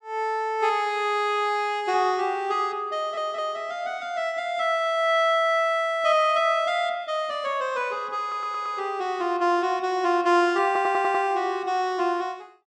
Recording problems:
audio stuttering; at 3 s, at 8 s and at 11 s

